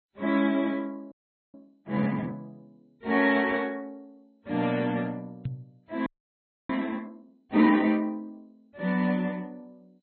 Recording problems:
lossy codec; MP3, then MP2, log-spectral distance 2 dB, nothing above 3.7 kHz
frozen audio; at 1 s and at 6 s for 0.5 s
knock on the microphone; at 5.5 s; peak -1 dB vs average level

